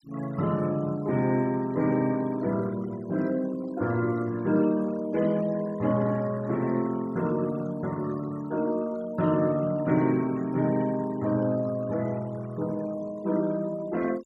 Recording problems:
noise reduction artefacts; signal-to-artefact ratio 21 dB

